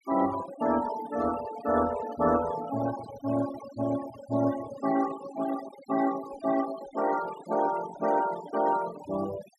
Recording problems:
denoising artefacts; signal-to-artefact ratio 13 dB

